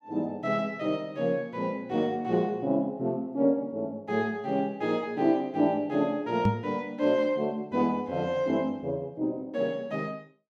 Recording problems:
knock on the microphone; at 6.5 s; peak +7 dB vs average level

